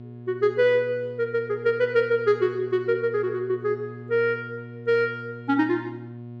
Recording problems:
hum; 60 Hz, harmonics up to 720 Hz, SNR 16 dB

